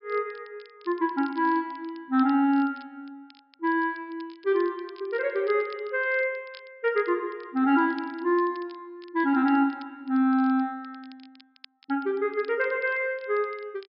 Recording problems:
treble missing; nothing above 5.5 kHz
crackle; vinyl, SNR 29 dB

